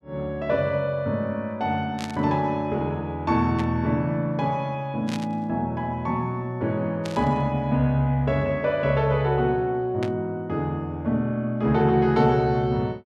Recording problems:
burst of static; 5 times, first at 2 s; peak -6 dB vs average level

